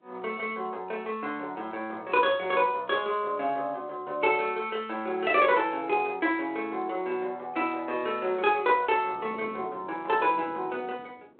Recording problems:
phone line; 280 Hz to 3.4 kHz, G.726
wind noise; below 520 Hz, SNR 20 dB

